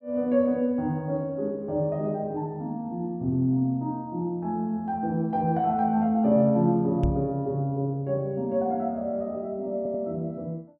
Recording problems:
knock on the microphone; at 7 s; peak +3 dB vs average level
audio stuttering; at 10 s

